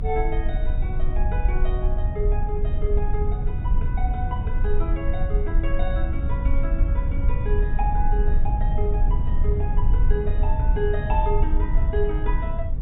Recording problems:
treble cut off; nothing above 4 kHz
rumble; below 58 Hz, strongest tone 20 Hz, SNR -7 dB

